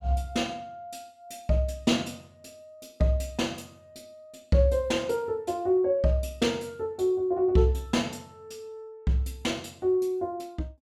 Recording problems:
none

